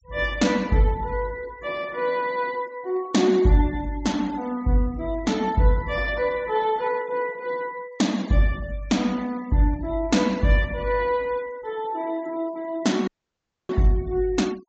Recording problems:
treble missing; nothing above 8 kHz
denoising artefacts; signal-to-artefact ratio 24 dB
audio cutting out; at 13 s for 0.5 s

